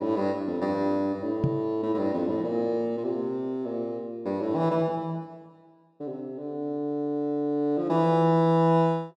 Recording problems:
microphone bump; at 1.5 s; peak +5 dB vs average level

